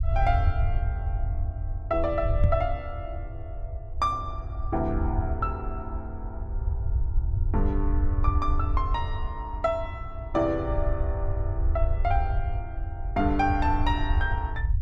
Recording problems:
low-frequency rumble; below 82 Hz, SNR 0 dB
knock on the microphone; at 2.5 s; peak +5 dB vs average level

